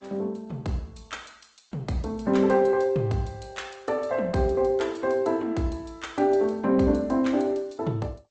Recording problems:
lossy compression; Opus, then G.722, log-spectral distance 4 dB, nothing above 8 kHz

